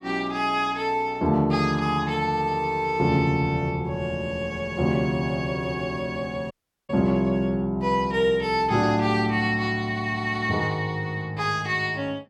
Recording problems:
dropout; at 6.5 s

